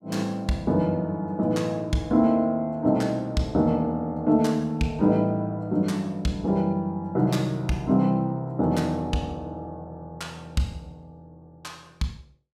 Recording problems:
none

